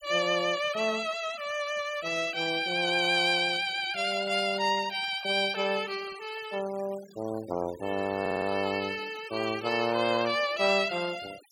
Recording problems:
noise reduction artefacts; signal-to-artefact ratio 18 dB
stutter; at 8 s

